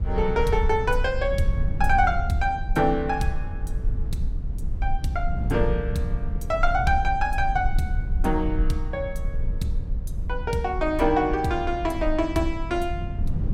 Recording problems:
rumble; below 56 Hz, SNR 5 dB
wind on the microphone; below 160 Hz, SNR 11 dB

